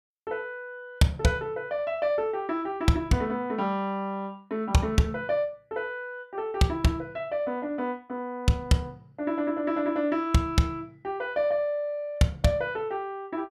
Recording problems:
none

